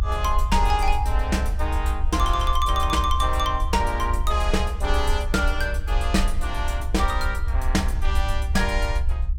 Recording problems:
low-frequency rumble; below 66 Hz, SNR 1 dB

